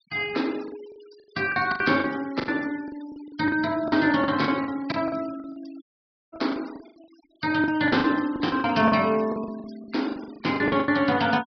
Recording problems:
low-pass filter; nothing above 5.5 kHz
noise reduction artefacts; signal-to-artefact ratio 22 dB
packet loss; 17% of the sound replaced, filled with the last packet
dropout; at 6 s for 0.5 s

